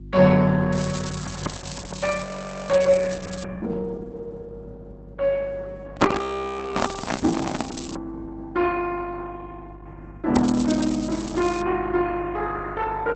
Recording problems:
codec artefacts; Opus, log-spectral distance 7 dB, nothing above 7.8 kHz
hum; 50 Hz, harmonics up to 350 Hz, SNR 18 dB
crackle; from 0.5 to 3.5 s, from 7 to 8 s and from 10 to 12 s; loose cable, SNR 15 dB
audio freezing; at 2 s and at 6 s for 0.5 s
microphone handling noise; from 6 to 7.5 s; peak +8 dB vs average level

